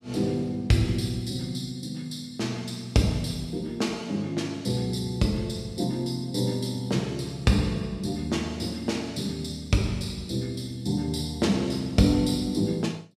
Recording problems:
none

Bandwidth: 15 kHz